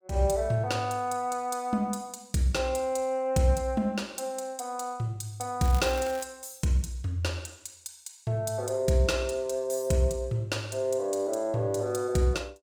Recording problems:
crackle; at 5.5 s; loose cable, SNR 15 dB

